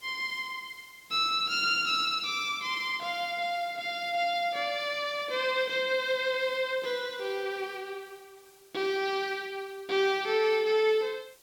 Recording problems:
hiss; slope -1 dB per octave, SNR 27 dB

